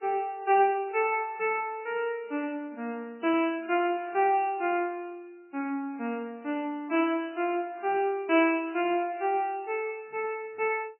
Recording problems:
lossy compression; MP3, log-spectral distance 3 dB, nothing above 2.4 kHz

